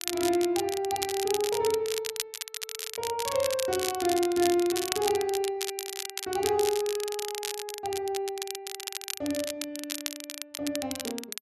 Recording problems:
crackling; vinyl, SNR 5 dB

